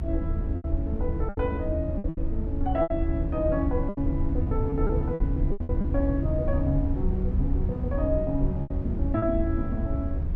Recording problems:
rumble; below 82 Hz, SNR 0 dB
packet loss; 9% of the sound replaced, filled with repeated pitch periods

